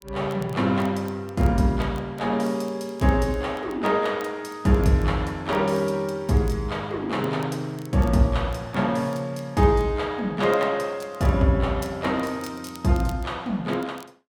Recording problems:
crackling; vinyl, SNR 27 dB

